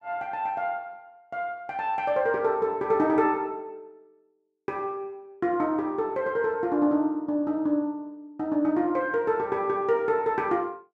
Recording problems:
none

